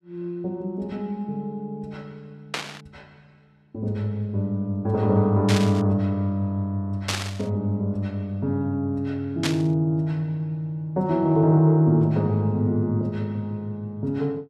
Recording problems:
static burst; 4 times, first at 2.5 s; peak +2 dB vs average level

